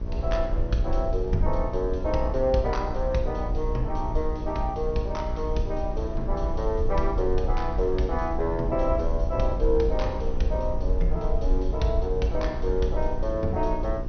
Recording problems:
low-pass filter; nothing above 6.2 kHz
electrical hum; 60 Hz, harmonics up to 1.1 kHz, SNR 10 dB
background hiss; slope -4 dB per octave, SNR 30 dB
rumble; below 54 Hz, SNR 3 dB
wind on the microphone; below 560 Hz, SNR 20 dB

